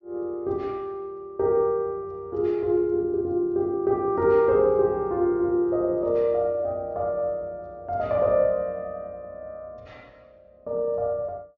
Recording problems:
low-pass filter; nothing above 6.9 kHz

